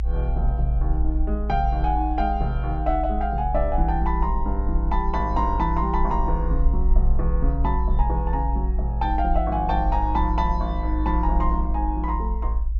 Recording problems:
treble missing; nothing above 8 kHz
low-frequency rumble; below 56 Hz, strongest tone 56 Hz, SNR -1 dB

